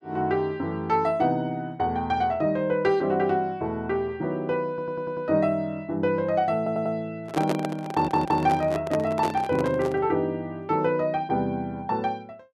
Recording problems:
stutter; at 4.5 s, at 6.5 s and at 8 s
microphone handling noise; from 7 to 10 s; peak +2 dB vs average level

